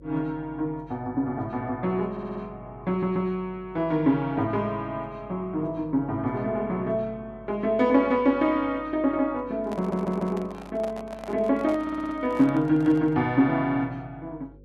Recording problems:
electrical hum; 50 Hz, harmonics up to 550 Hz, SNR 24 dB
stutter; 4 times, first at 2 s
handling noise; from 9.5 to 13 s; peak -7 dB vs average level

